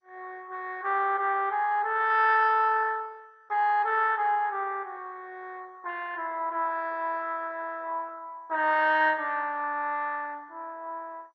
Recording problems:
lossy codec; MP2, log-spectral distance 4 dB, nothing above 4.9 kHz

